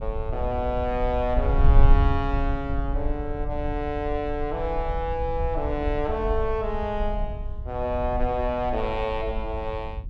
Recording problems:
wind noise; below 62 Hz, SNR 2 dB

